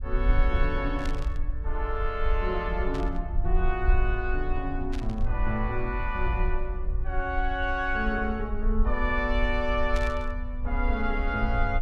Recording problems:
low-frequency rumble; below 50 Hz, SNR 1 dB
burst of static; 4 times, first at 1 s; peak -5 dB vs average level

